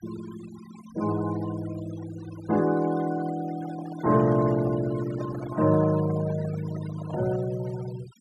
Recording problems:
denoising artefacts; signal-to-artefact ratio 17 dB
microphone handling noise; from 3.5 to 7.5 s; peak -10 dB vs average level

